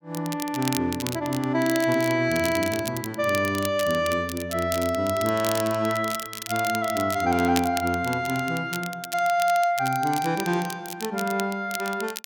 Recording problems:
crackle; vinyl, SNR 11 dB

